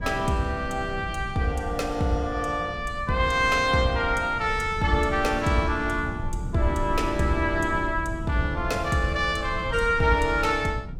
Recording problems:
low-frequency rumble; below 120 Hz, SNR 11 dB

